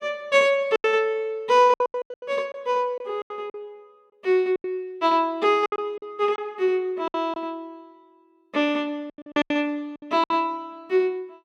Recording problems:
packet loss; 12% of the sound replaced, filled with silence

